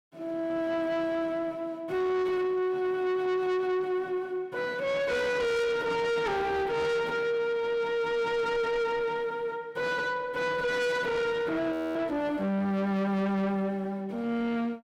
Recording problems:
distortion; soft clipping, signal-to-distortion ratio 8 dB
frozen audio; at 12 s

